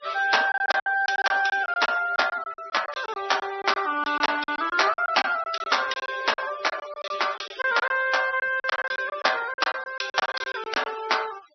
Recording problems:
low-pass filter; nothing above 5.8 kHz
noise reduction artefacts; signal-to-artefact ratio 15 dB
lost packets; 15% of the sound replaced, filled with silence

